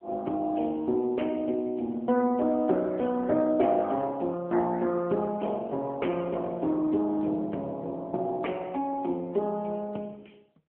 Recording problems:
telephone audio; 190 Hz to 3.2 kHz, AMR-NB

